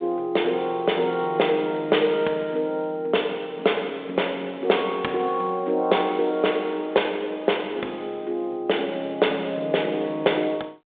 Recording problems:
telephone audio; 320 Hz to 3.7 kHz, G.726

